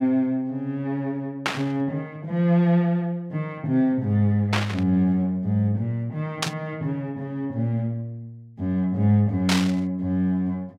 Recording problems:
burst of static; 4 times, first at 1.5 s; peak +4 dB vs average level

